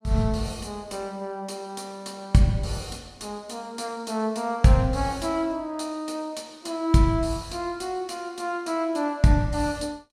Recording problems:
none

